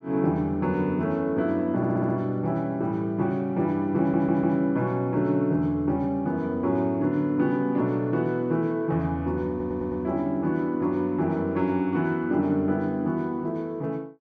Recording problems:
stutter; at 2 s, at 4 s and at 9.5 s

